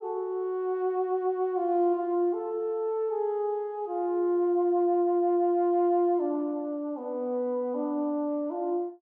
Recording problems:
none

